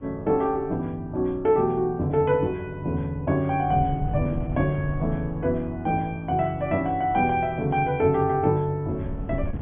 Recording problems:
treble cut off; nothing above 3.4 kHz
wind on the microphone; below 150 Hz, SNR 14 dB

